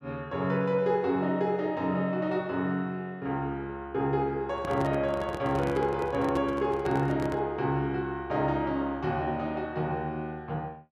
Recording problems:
microphone handling noise; from 4.5 to 7.5 s; peak -3 dB vs average level

